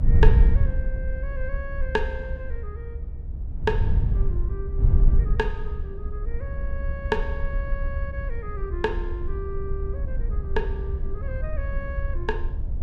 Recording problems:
rumble; below 68 Hz, SNR -1 dB
wind on the microphone; below 70 Hz, SNR -8 dB

